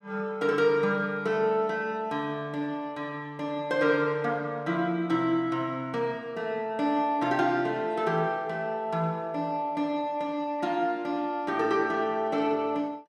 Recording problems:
none

